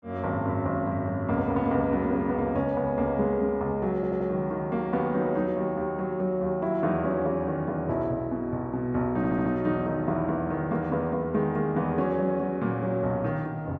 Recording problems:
stutter; at 4 s and at 9 s

